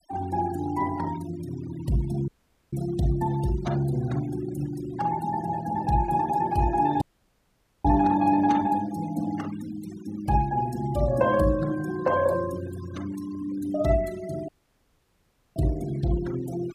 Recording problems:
denoising artefacts; signal-to-artefact ratio 17 dB
audio cutting out; at 2.5 s, at 7 s for 1 s and at 14 s for 1 s

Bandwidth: 15 kHz